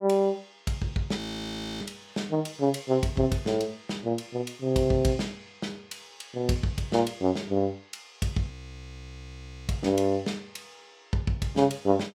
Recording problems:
frozen audio; at 1 s for 0.5 s and at 8.5 s for 1 s

